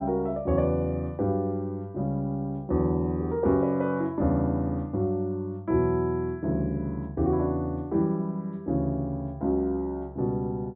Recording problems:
treble cut off; nothing above 4 kHz

